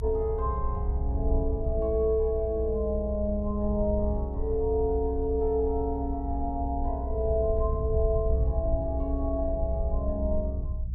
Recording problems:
rumble; below 66 Hz, strongest tone 62 Hz, SNR 2 dB

